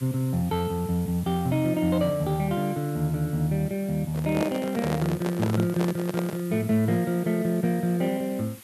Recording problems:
background hiss; slope +1 dB per octave, SNR 20 dB
microphone handling noise; from 4 to 6.5 s; peak +1 dB vs average level

